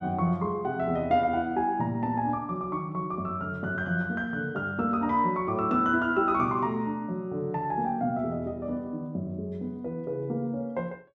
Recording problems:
none

